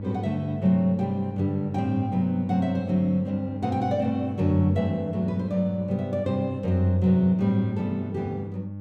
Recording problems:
electrical hum; 50 Hz, harmonics up to 600 Hz, SNR 10 dB

